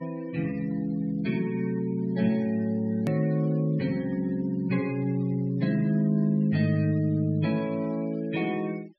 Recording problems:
treble cut off; nothing above 5.6 kHz
denoising artefacts; signal-to-artefact ratio 23 dB
edit click; at 3 s

